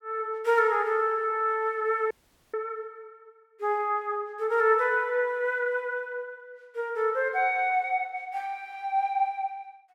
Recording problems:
audio cutting out; at 2 s

